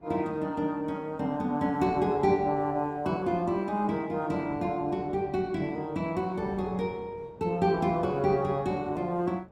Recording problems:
lossy compression; Opus, log-spectral distance 2 dB, nothing above 18.9 kHz
wind on the microphone; below 500 Hz, SNR 20 dB

